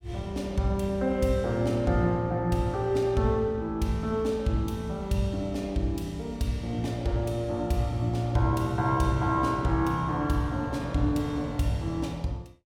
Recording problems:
none

